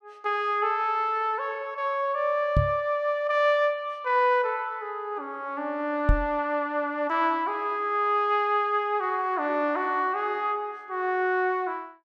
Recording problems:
microphone bump; at 2.5 s and at 6 s; peak +7 dB vs average level

